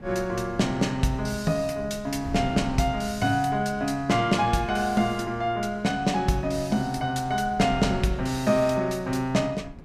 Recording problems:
wind on the microphone; below 220 Hz, SNR 16 dB

